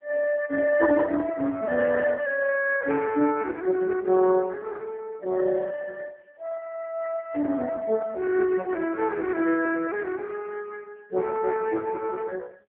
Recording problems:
telephone audio; 260 Hz to 2.9 kHz, AMR-NB

